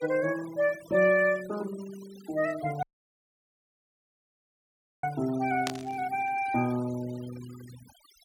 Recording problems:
noise reduction artefacts; signal-to-artefact ratio 18 dB
dropout; at 3 s for 2 s
burst of static; at 5.5 s; peak 0 dB vs average level

